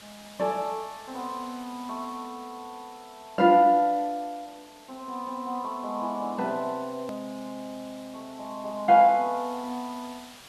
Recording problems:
hiss; slope 0 dB per octave, SNR 23 dB
hard cut with a click; at 7 s

